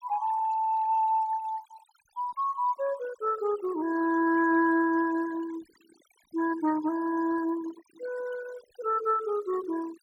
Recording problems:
noise reduction artefacts; signal-to-artefact ratio 20 dB

